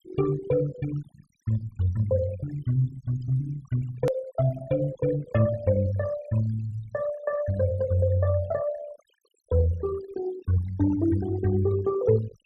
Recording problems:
noise reduction artefacts; signal-to-artefact ratio 17 dB
hard cut with a click; at 4 s

